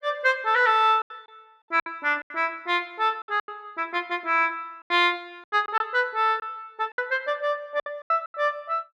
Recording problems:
lost packets; 9% of the sound replaced, filled with silence

